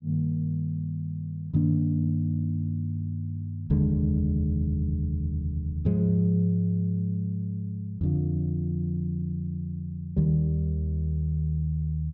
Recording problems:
treble missing; nothing above 7.8 kHz

